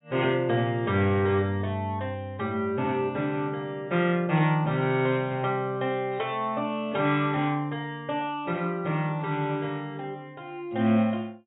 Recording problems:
treble cut off; nothing above 4 kHz

